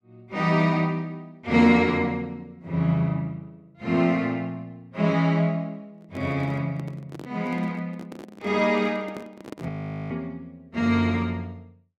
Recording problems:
handling noise; from 6 to 9.5 s; peak -8 dB vs average level
audio freezing; at 9.5 s

